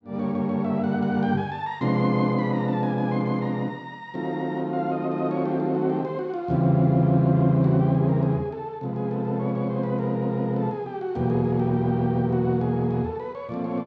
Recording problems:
none

